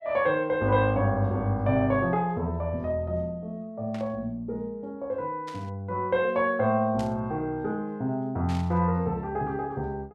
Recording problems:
static burst; 4 times, first at 4 s; peak -11 dB vs average level

